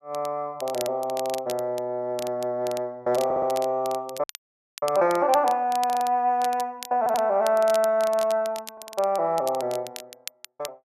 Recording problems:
crackle; vinyl, SNR 16 dB
audio stuttering; 4 times, first at 3 s
frozen audio; at 4 s for 0.5 s

